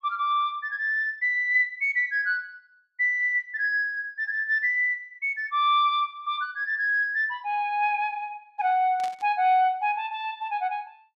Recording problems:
burst of static; at 9 s; peak -12 dB vs average level

